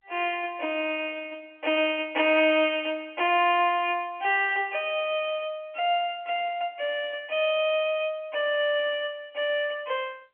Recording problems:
phone line; 240 Hz to 3.3 kHz, G.711

